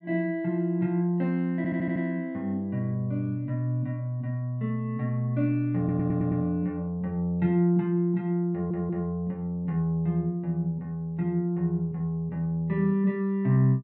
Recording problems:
stutter; at 1.5 s, at 6 s and at 8.5 s

